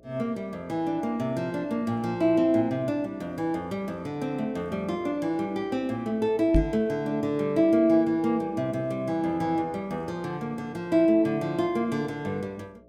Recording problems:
electrical hum; 60 Hz, harmonics up to 660 Hz, SNR 28 dB
microphone bump; at 6.5 s; peak +6 dB vs average level

